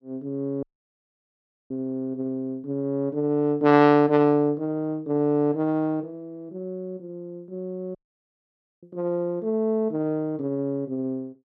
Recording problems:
audio cutting out; at 0.5 s for 1 s and at 8 s for 1 s

